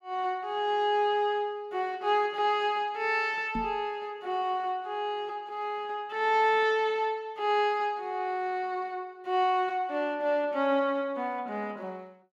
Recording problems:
knock on the microphone; at 3.5 s; peak -2 dB vs average level

